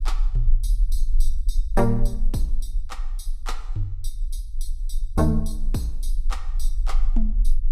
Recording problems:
rumble; below 34 Hz, strongest tone 20 Hz, SNR -1 dB

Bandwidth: 15 kHz